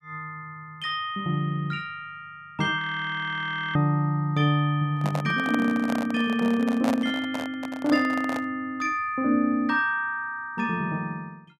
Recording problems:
audio freezing; at 3 s for 1 s
handling noise; from 5 to 8.5 s; peak 0 dB vs average level

